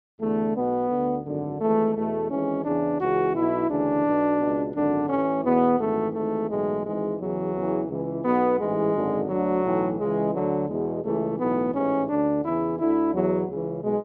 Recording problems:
none

